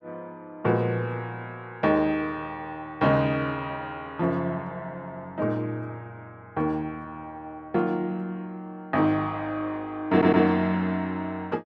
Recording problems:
stutter; at 10 s

